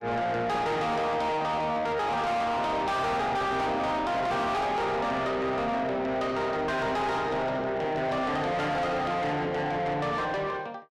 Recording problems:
distortion; soft clipping, signal-to-distortion ratio 6 dB

